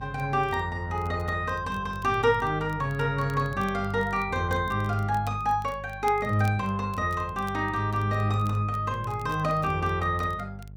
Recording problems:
electrical hum; 50 Hz, harmonics up to 450 Hz, SNR 15 dB
crackling; vinyl, SNR 27 dB

